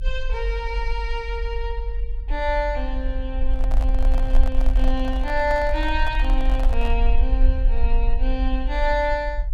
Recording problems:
low-frequency rumble; below 46 Hz, SNR -2 dB
microphone handling noise; from 3.5 to 7 s; peak -4 dB vs average level

